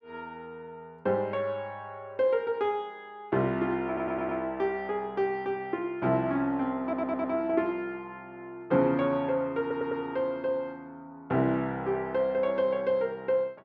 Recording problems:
audio stuttering; at 4 s, at 7 s and at 9.5 s

